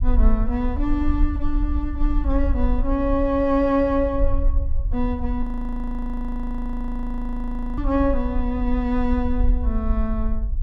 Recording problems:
rumble; below 52 Hz, SNR 2 dB
audio freezing; at 5.5 s for 2.5 s

